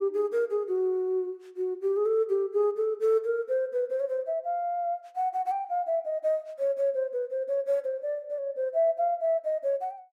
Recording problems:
none

